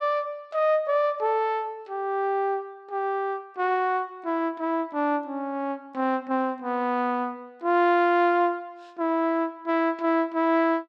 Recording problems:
none

